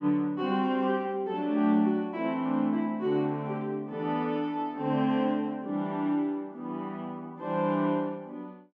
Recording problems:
treble cut off; nothing above 7.9 kHz

